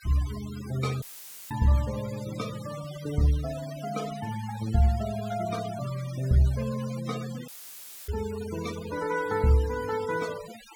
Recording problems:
noise reduction artefacts; signal-to-artefact ratio 15 dB
audio cutting out; at 1 s and at 7.5 s for 0.5 s; filled with static

